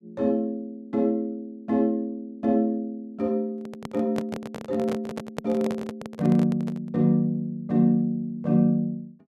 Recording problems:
microphone handling noise; from 3.5 to 7 s; peak -1 dB vs average level

